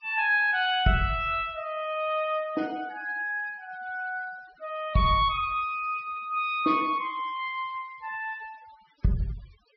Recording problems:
treble cut off; nothing above 5.5 kHz
denoising artefacts; signal-to-artefact ratio 25 dB

